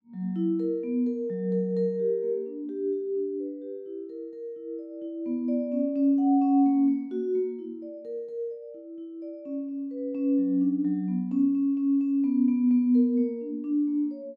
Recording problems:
none

